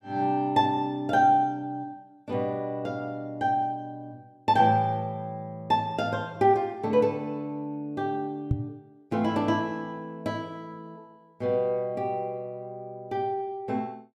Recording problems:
knock on the microphone; at 8.5 s; peak +5 dB vs average level

